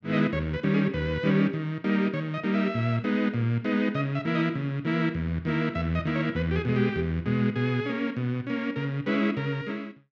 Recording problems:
none

